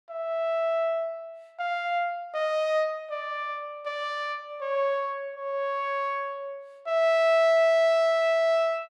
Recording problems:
none

